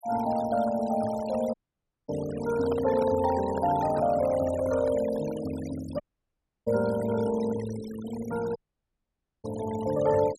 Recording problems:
denoising artefacts; signal-to-artefact ratio 16 dB
dropout; at 1.5 s for 0.5 s, at 6 s for 0.5 s and at 8.5 s for 1 s
handling noise; from 2.5 to 5.5 s; peak -3 dB vs average level

